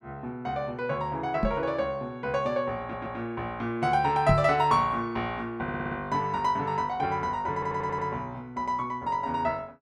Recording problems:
knock on the microphone; at 1.5 s and at 4.5 s; peak +5 dB vs average level
stutter; at 3 s, at 5.5 s and at 7.5 s

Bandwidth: 13.5 kHz